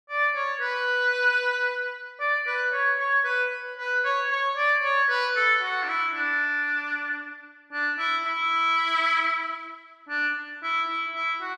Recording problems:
none

